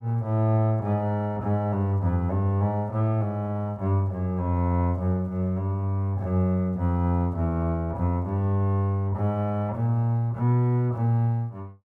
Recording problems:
none

